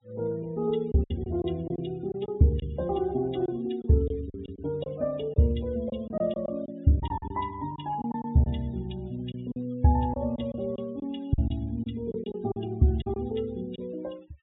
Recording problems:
low-pass filter; nothing above 4 kHz
denoising artefacts; signal-to-artefact ratio 27 dB
lost packets; 8% of the sound replaced, filled with silence

